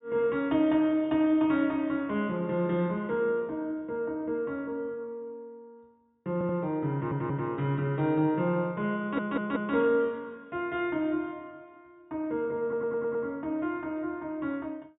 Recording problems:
treble missing; nothing above 4 kHz
stutter; 4 times, first at 6.5 s

